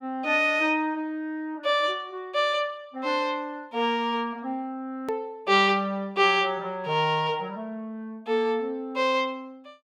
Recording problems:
click at an edit; at 5 s

